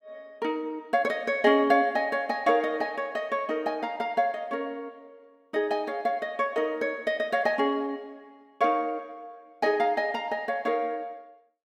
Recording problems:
none

